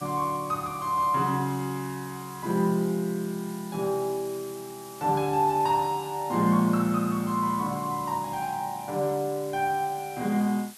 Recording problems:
background hiss; slope +1 dB per octave, SNR 18 dB

